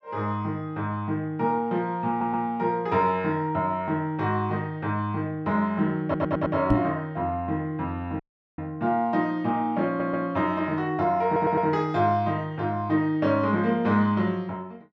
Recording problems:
audio stuttering; 4 times, first at 2 s
microphone thump; at 6.5 s; peak +7 dB vs average level
audio cutting out; at 8 s

